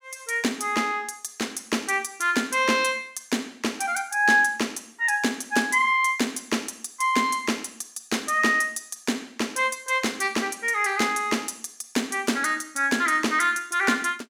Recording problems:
none

